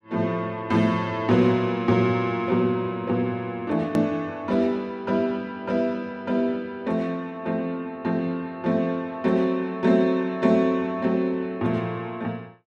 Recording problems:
edit click; at 4 s

